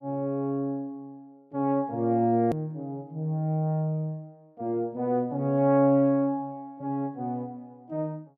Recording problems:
click at an edit; at 2.5 s

